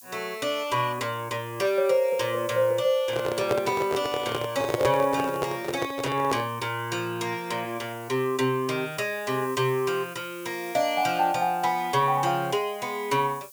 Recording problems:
background hiss; SNR 20 dB
microphone handling noise; from 3 to 6.5 s; peak +5 dB vs average level

